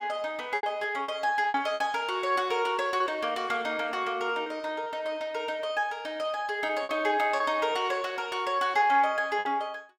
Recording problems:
lost packets; 6% of the sound replaced, filled with repeated pitch periods

